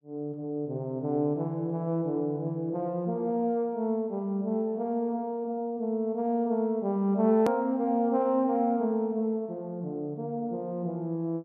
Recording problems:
edit click; at 7.5 s

